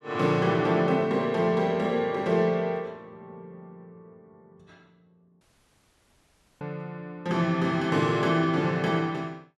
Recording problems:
dropout; at 5.5 s for 1 s

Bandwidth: 12 kHz